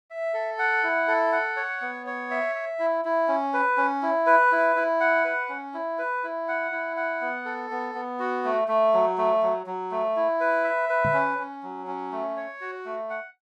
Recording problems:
microphone thump; at 11 s; peak -4 dB vs average level

